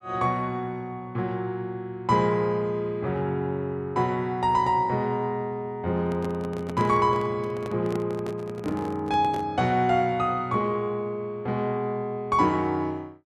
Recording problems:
handling noise; from 6 to 9.5 s; peak -5 dB vs average level

